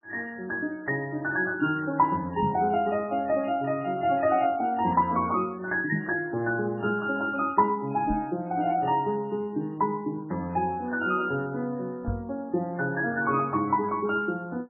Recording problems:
lossy codec; MP3, then MP3, log-spectral distance 2 dB, nothing above 2.5 kHz
microphone bump; 4 times, first at 2.5 s; peak +1 dB vs average level

